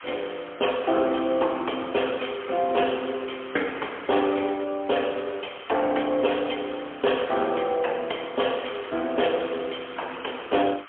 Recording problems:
phone line; 280 Hz to 3.3 kHz, AMR-NB, then MP3
background hiss; SNR 16 dB

